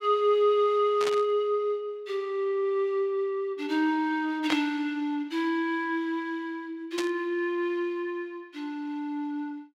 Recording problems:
burst of static; at 1 s, at 4.5 s and at 7 s; peak 0 dB vs average level

